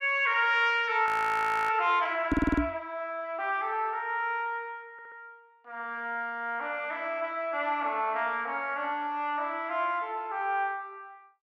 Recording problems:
frozen audio; at 1 s for 0.5 s
audio stuttering; at 2.5 s and at 5 s
knock on the microphone; at 2.5 s; peak +6 dB vs average level

